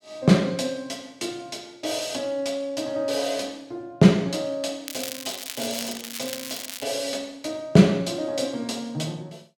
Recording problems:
crackle; from 5 to 7 s; loose cable, SNR 9 dB

